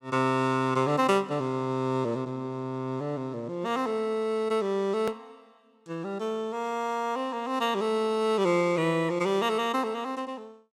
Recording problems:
click at an edit; at 5 s

